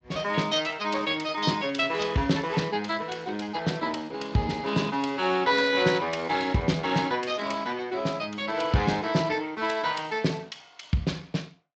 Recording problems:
lossy compression; Speex, log-spectral distance 5 dB

